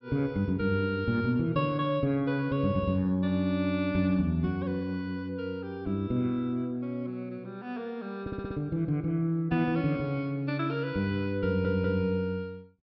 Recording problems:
treble cut off; nothing above 5.5 kHz
audio stuttering; at 8 s and at 11 s

